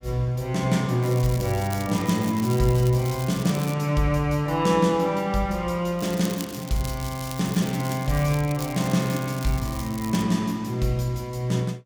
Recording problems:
crackle; from 1 to 3.5 s and from 6 to 10 s; loose cable, SNR 15 dB

